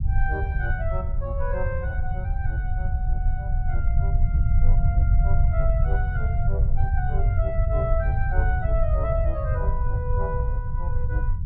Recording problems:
low-frequency rumble; below 80 Hz, SNR -8 dB

